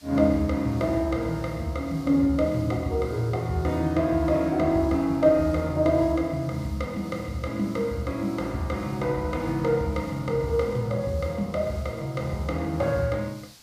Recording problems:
background hiss; SNR 24 dB

